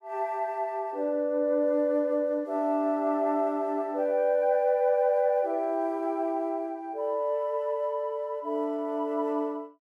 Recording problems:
none

